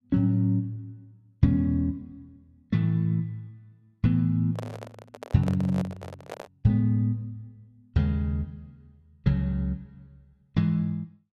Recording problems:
microphone handling noise; from 4.5 to 6.5 s; peak -5 dB vs average level

